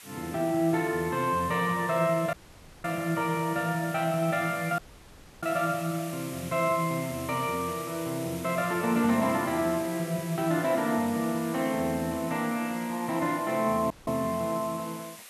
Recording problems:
hiss; SNR 14 dB
audio cutting out; at 2.5 s for 0.5 s, at 5 s for 0.5 s and at 14 s

